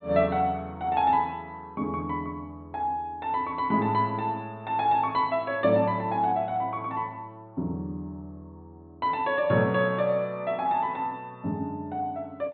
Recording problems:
treble cut off; nothing above 4.3 kHz

